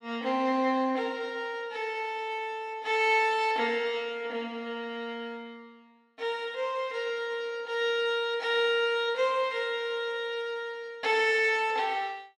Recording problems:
none

